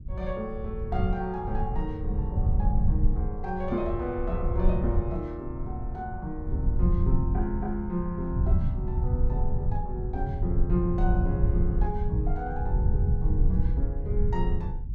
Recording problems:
rumble; below 88 Hz, SNR -4 dB

